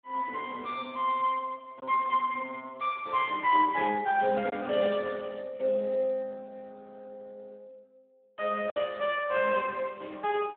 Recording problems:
phone line; 260 Hz to 3.5 kHz, Speex
packet loss; 1% of the sound replaced, filled with silence

